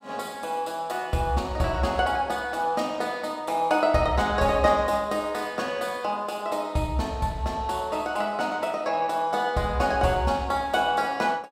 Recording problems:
none

